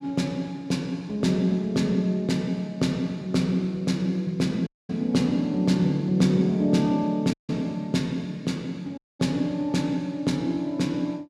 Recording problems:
dropout; at 4.5 s, at 7.5 s and at 9 s

